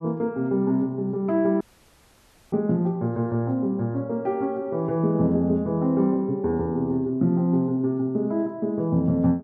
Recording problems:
dropout; at 1.5 s for 1 s

